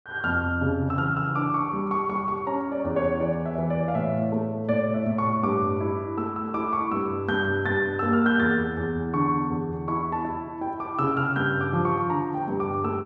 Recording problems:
none

